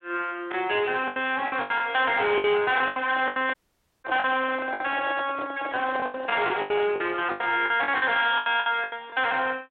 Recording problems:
phone line; 300 Hz to 3.6 kHz, Speex
distortion; hard clipping, signal-to-distortion ratio 11 dB
lost packets; 14% of the sound replaced, filled with the last packet
handling noise; from 3 to 6.5 s; peak -5 dB vs average level
audio cutting out; at 3.5 s for 0.5 s

